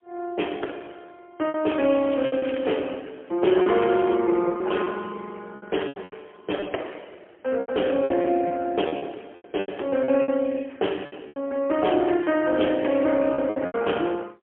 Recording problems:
phone line; 240 Hz to 3.3 kHz, AMR-NB, then MP3
packet loss; 10% of the sound replaced, filled with repeated pitch periods
crackle; at 2 s and at 3.5 s; loose cable, SNR 17 dB

